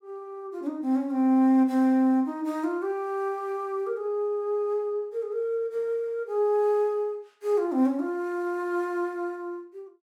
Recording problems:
none

